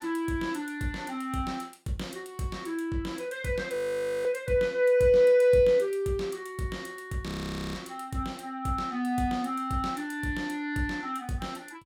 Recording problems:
audio freezing; at 3.5 s for 0.5 s and at 7.5 s

